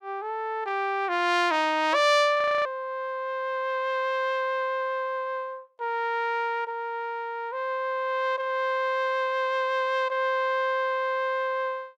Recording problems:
audio freezing; at 2.5 s

